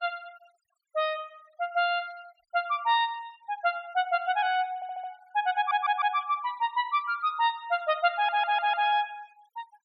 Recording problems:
noise reduction artefacts; signal-to-artefact ratio 28 dB
audio stuttering; at 5 s, at 5.5 s and at 8 s

